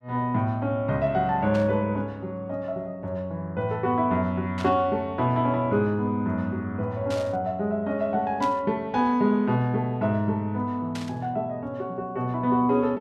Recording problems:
static burst; 5 times, first at 1.5 s; peak -8 dB vs average level

